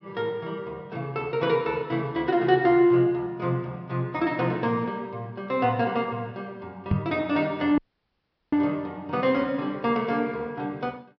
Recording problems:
treble missing; nothing above 5.5 kHz
microphone thump; at 7 s; peak +5 dB vs average level
dropout; at 8 s for 0.5 s

